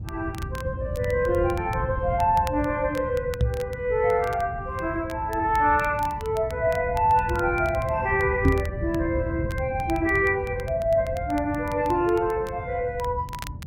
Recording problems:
codec artefacts; Opus, log-spectral distance 2 dB
low-frequency rumble; below 130 Hz, SNR 9 dB
crackling; vinyl, SNR 22 dB
knock on the microphone; at 3.5 s and at 8.5 s; peak +7 dB vs average level

